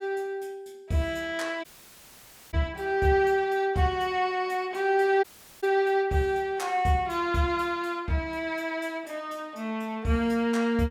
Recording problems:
dropout; at 1.5 s for 1 s and at 5 s

